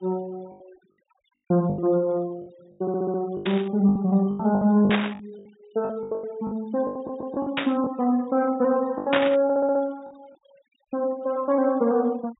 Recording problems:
low-pass filter; nothing above 4 kHz
denoising artefacts; signal-to-artefact ratio 28 dB
lost packets; 12% of the sound replaced, filled with the last packet
stutter; at 3 s, at 7 s and at 9.5 s
static burst; 4 times, first at 3.5 s; peak +4 dB vs average level

